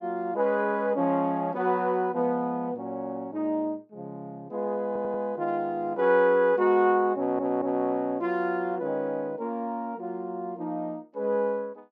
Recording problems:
stutter; at 5 s and at 7 s

